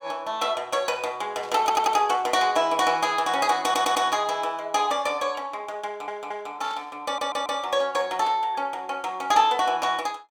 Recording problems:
burst of static; at 1.5 s, at 3.5 s and at 6.5 s; peak -14 dB vs average level
stutter; 4 times, first at 1.5 s

